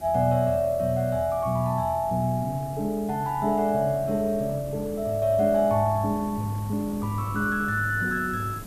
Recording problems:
hiss; slope +1 dB per octave, SNR 23 dB
wind on the microphone; below 380 Hz, SNR 18 dB

